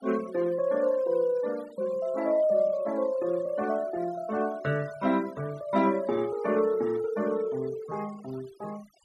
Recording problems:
noise reduction artefacts; signal-to-artefact ratio 22 dB

